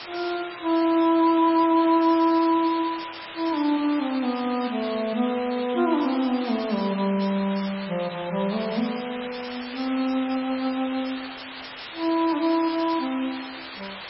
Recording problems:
codec artefacts; MP3, log-spectral distance 16 dB, nothing above 4.6 kHz
background hiss; SNR 12 dB

